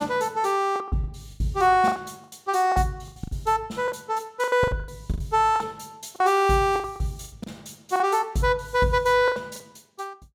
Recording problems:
packet loss; 14% of the sound replaced, filled with the last packet

